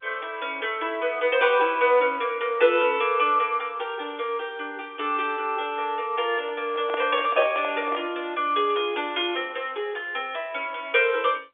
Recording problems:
phone line; 300 Hz to 3.6 kHz, G.711
microphone handling noise; from 6.5 to 8 s; peak -4 dB vs average level

